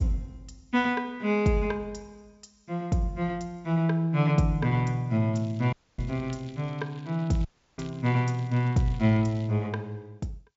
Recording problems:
treble missing; nothing above 7.3 kHz
lossy compression; G.722, log-spectral distance 2 dB
crackling; from 5.5 to 9.5 s; loose cable, SNR 27 dB
dropout; at 5.5 s and at 7.5 s

